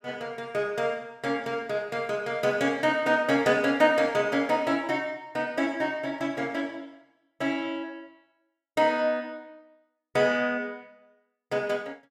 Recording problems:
none

